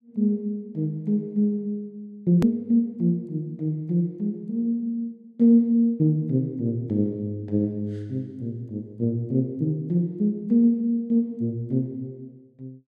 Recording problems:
edit click; at 2.5 s

